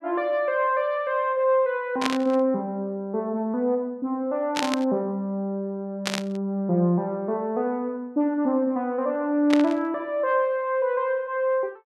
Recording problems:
static burst; 4 times, first at 2 s; peak +3 dB vs average level

